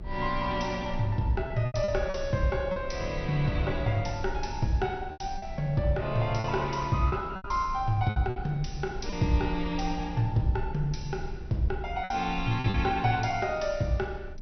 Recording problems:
lossy compression; MP2, log-spectral distance 2 dB, nothing above 6 kHz
low-frequency rumble; below 68 Hz, strongest tone 20 Hz, SNR 11 dB
packet loss; 6% of the sound replaced, filled with repeated pitch periods

